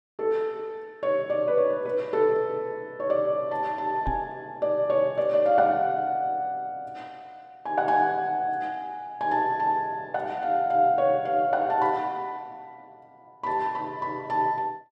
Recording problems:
knock on the microphone; at 4 s; peak -2 dB vs average level

